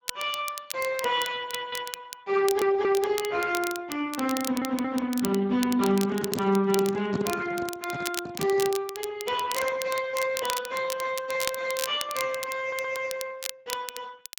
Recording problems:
lossy compression; Speex, log-spectral distance 4 dB
crackle; vinyl, SNR 9 dB
audio stuttering; 4 times, first at 1.5 s
handling noise; from 6 to 9 s; peak +3 dB vs average level

